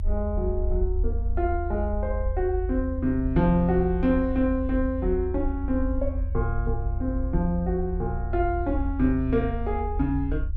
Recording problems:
low-frequency rumble; below 78 Hz, SNR 3 dB

